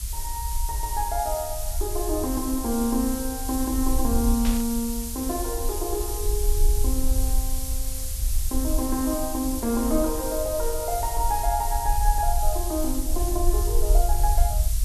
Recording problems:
hiss; SNR 5 dB
rumble; below 54 Hz, SNR 2 dB
burst of static; at 4.5 s; peak -3 dB vs average level

